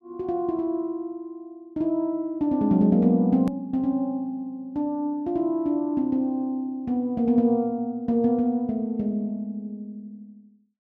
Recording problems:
edit click; at 3.5 s

